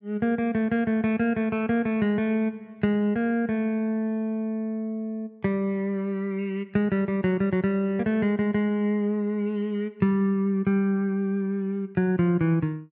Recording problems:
none

